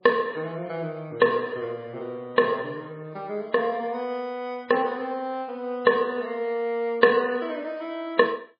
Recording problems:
lossy codec; MP3, log-spectral distance 2 dB, nothing above 4.1 kHz

